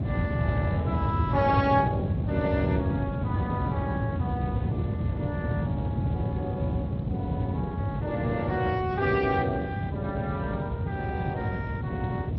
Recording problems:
lossy codec; MP3, then Speex, log-spectral distance 2 dB
rumble; below 200 Hz, SNR -2 dB

